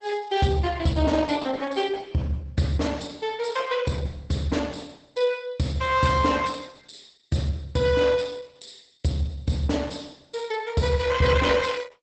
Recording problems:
lossy compression; Opus, log-spectral distance 5 dB, nothing above 8.2 kHz

